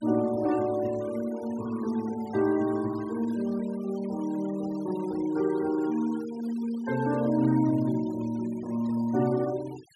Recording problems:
denoising artefacts; signal-to-artefact ratio 20 dB

